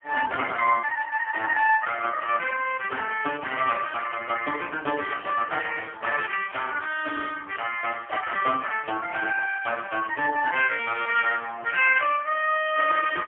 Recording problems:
phone line; 370 Hz to 3.1 kHz, AMR-NB, then MP3
burst of static; at 6.5 s; peak -9 dB vs average level

